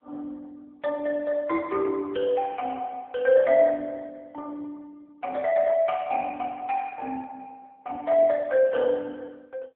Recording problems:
telephone audio; 260 Hz to 3.1 kHz, AMR-NB

